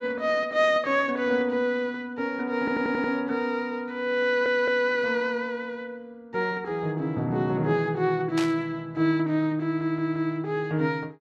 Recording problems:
stutter; at 2.5 s, at 4 s and at 9.5 s
burst of static; at 8.5 s; peak -3 dB vs average level

